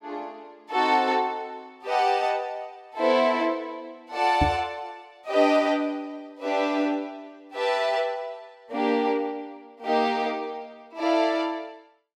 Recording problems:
microphone thump; at 4.5 s; peak +4 dB vs average level

